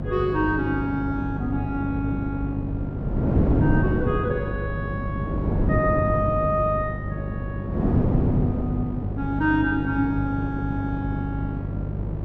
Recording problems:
hum; 50 Hz, harmonics up to 600 Hz, SNR 4 dB
wind on the microphone; below 300 Hz, SNR 1 dB

